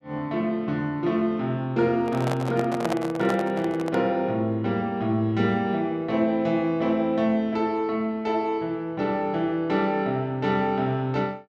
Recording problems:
microphone handling noise; from 2 to 4 s; peak 0 dB vs average level

